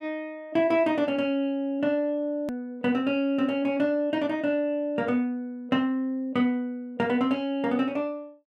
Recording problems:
edit click; at 2.5 s

